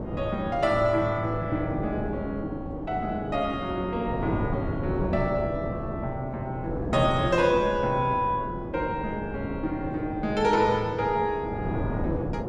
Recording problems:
wind on the microphone; below 420 Hz, SNR 6 dB

